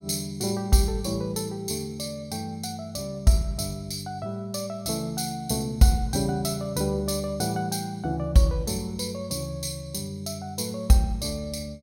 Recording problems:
none

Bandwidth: 16.5 kHz